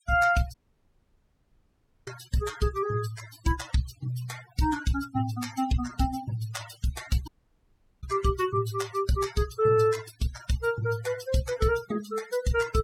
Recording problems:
noise reduction artefacts; signal-to-artefact ratio 13 dB
audio cutting out; at 0.5 s for 1.5 s and at 7.5 s for 0.5 s

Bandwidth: 17 kHz